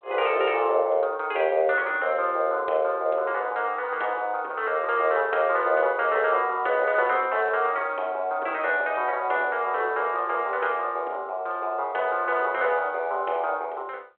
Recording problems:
telephone audio; 320 Hz to 3.6 kHz, G.726

